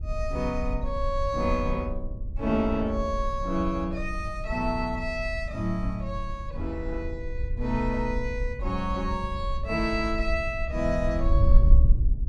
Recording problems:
wind noise; below 60 Hz, SNR 1 dB

